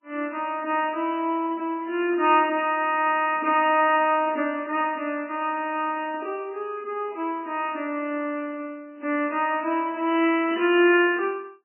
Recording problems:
lossy codec; MP3, log-spectral distance 2 dB, nothing above 2.5 kHz

